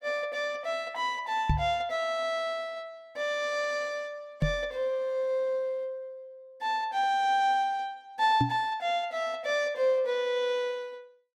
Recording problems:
microphone thump; at 1.5 s, at 4.5 s and at 8.5 s; peak +6 dB vs average level

